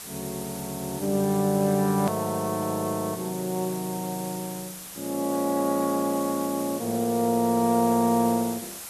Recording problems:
hiss; slope -1 dB per octave, SNR 11 dB
hard cut with a click; at 2 s

